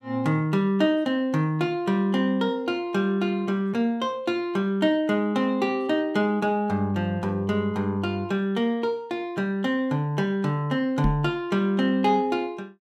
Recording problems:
knock on the microphone; at 11 s; peak +2 dB vs average level

